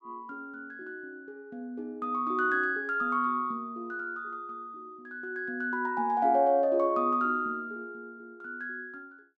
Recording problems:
none

